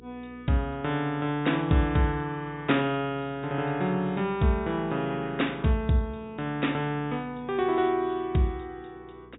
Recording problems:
treble missing; nothing above 4 kHz
electrical hum; 60 Hz, harmonics up to 480 Hz, SNR 24 dB

